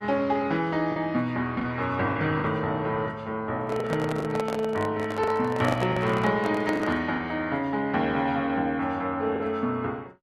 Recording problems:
codec artefacts; Opus, log-spectral distance 2 dB
lost packets; 5% of the sound replaced, filled with the last packet
handling noise; from 3.5 to 7 s; peak -1 dB vs average level

